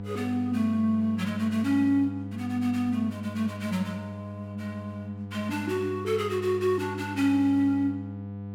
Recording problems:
hum; 50 Hz, harmonics up to 1 kHz, SNR 10 dB

